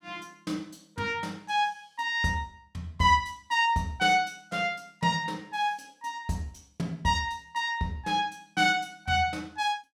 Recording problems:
none

